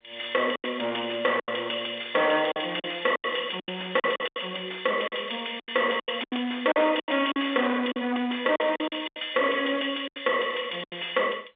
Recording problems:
telephone audio; 260 Hz to 3.6 kHz, G.711
distorted audio; soft clipping, signal-to-distortion ratio 8 dB
packet loss; 12% of the sound replaced, filled with silence

